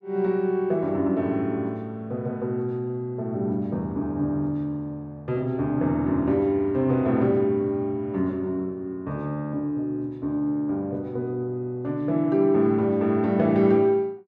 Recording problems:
none

